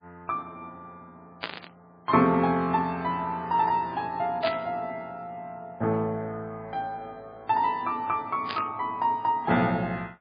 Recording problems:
codec artefacts; MP3, log-spectral distance 2 dB, nothing above 4.2 kHz
static burst; at 1.5 s, at 4.5 s and at 8.5 s; peak 0 dB vs average level

